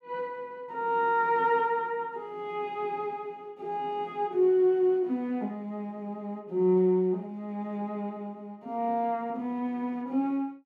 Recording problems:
none

